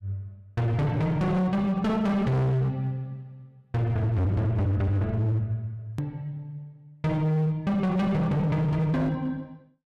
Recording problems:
distorted audio; hard clipping, signal-to-distortion ratio 7 dB
edit click; at 6 s

